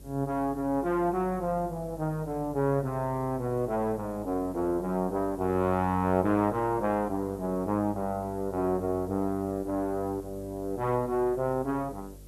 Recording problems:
electrical hum; 50 Hz, harmonics up to 600 Hz, SNR 20 dB
hiss; SNR 27 dB

